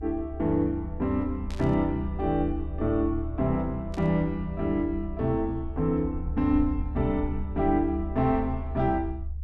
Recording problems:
low-frequency rumble; below 74 Hz, strongest tone 72 Hz, SNR 8 dB
static burst; at 1.5 s and at 4 s; peak -13 dB vs average level

